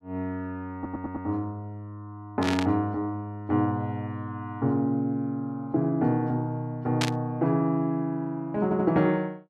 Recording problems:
audio stuttering; at 1 s and at 8.5 s
burst of static; at 2.5 s and at 7 s; peak +4 dB vs average level

